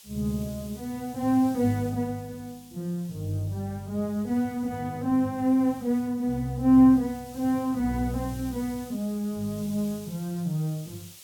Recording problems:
background hiss; SNR 22 dB

